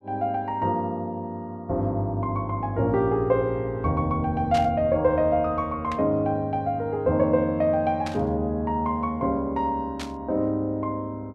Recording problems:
static burst; 4 times, first at 4.5 s; peak -6 dB vs average level

